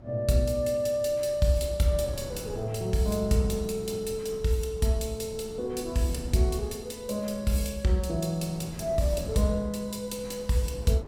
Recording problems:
wind noise; below 320 Hz, SNR 15 dB

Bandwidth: 17 kHz